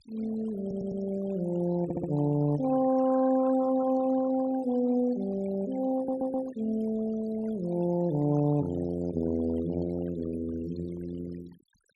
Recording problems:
denoising artefacts; signal-to-artefact ratio 19 dB
audio stuttering; at 0.5 s, at 2 s and at 6 s

